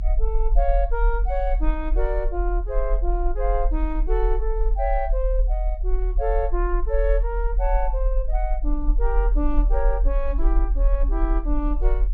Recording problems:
treble missing; nothing above 7.5 kHz
rumble; below 42 Hz, strongest tone 40 Hz, SNR -3 dB

